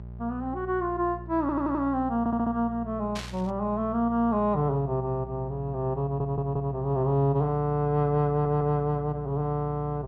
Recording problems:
hum; 60 Hz, harmonics up to 780 Hz, SNR 14 dB
audio stuttering; 4 times, first at 1.5 s
burst of static; at 3 s; peak -6 dB vs average level

